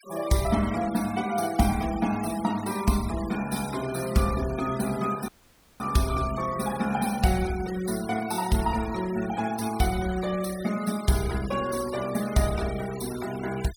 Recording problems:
denoising artefacts; signal-to-artefact ratio 14 dB
dropout; at 5.5 s for 0.5 s

